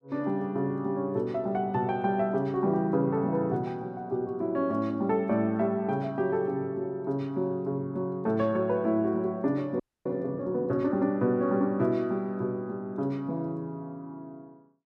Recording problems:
frozen audio; at 10 s

